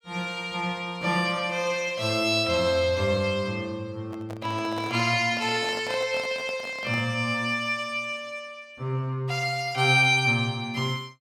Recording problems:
microphone handling noise; from 4 to 7 s; peak -7 dB vs average level

